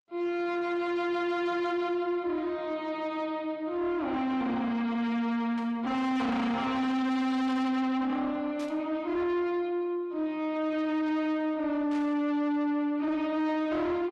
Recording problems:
codec artefacts; Opus, log-spectral distance 2 dB, nothing above 12 kHz
distorted audio; soft clipping, signal-to-distortion ratio 6 dB
static burst; at 5.5 s, at 8.5 s and at 12 s; peak -13 dB vs average level

